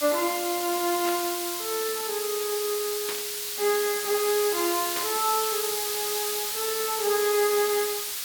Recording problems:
background hiss; slope +4 dB per octave, SNR 1 dB
burst of static; at 1 s, at 3 s and at 5 s; peak -3 dB vs average level

